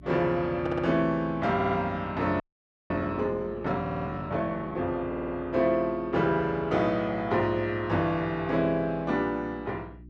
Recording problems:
electrical hum; 60 Hz, harmonics up to 360 Hz, SNR 21 dB
audio stuttering; 4 times, first at 0.5 s
frozen audio; at 2.5 s for 0.5 s

